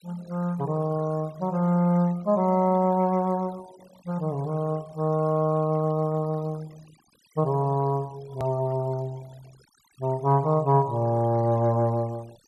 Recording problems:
denoising artefacts; signal-to-artefact ratio 26 dB
hard cut with a click; at 8.5 s

